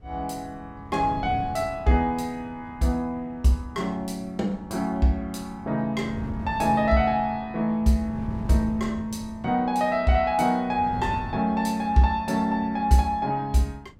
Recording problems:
wind noise; below 190 Hz, SNR 15 dB

